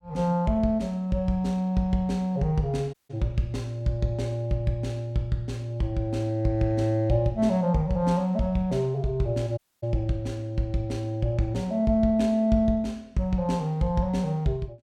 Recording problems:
audio cutting out; at 3 s and at 9.5 s

